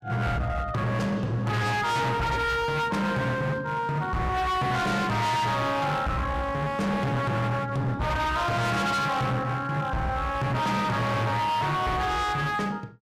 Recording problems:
distorted audio; hard clipping, signal-to-distortion ratio 6 dB

